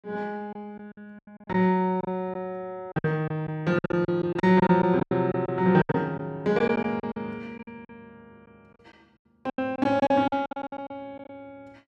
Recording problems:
packet loss; 14% of the sound replaced, filled with silence

